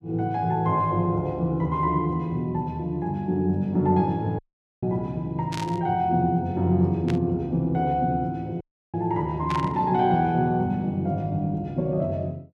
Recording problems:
dropout; at 4.5 s and at 8.5 s
burst of static; at 5.5 s, at 7 s and at 9.5 s; peak -5 dB vs average level

